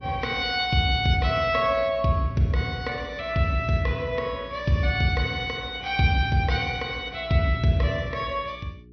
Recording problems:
low-pass filter; nothing above 6 kHz
hum; 60 Hz, harmonics up to 420 Hz, SNR 23 dB

